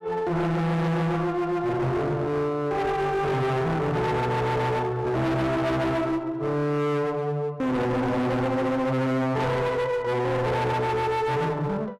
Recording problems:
distortion; hard clipping, uneven, signal-to-distortion ratio 5 dB

